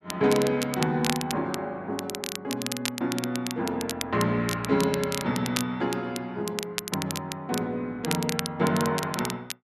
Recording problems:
crackling; vinyl, SNR 6 dB

